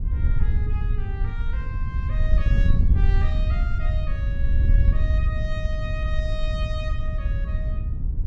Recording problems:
wind on the microphone; below 76 Hz, SNR -13 dB

